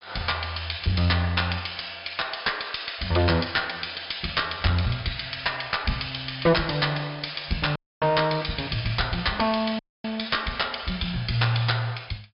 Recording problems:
treble missing; nothing above 5.5 kHz
distorted audio; hard clipping, uneven, signal-to-distortion ratio 11 dB
dropout; at 8 s and at 10 s

